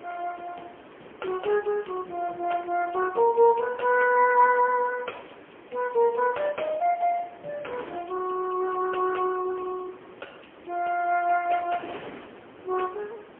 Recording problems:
phone line; 280 Hz to 2.6 kHz, AMR-NB, then MP3
wind on the microphone; below 1.5 kHz, SNR 21 dB

